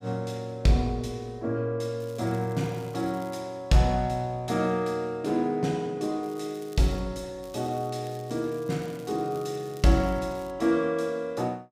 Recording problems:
crackle; 4 times, first at 2 s; loose cable, SNR 25 dB

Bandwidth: 15.5 kHz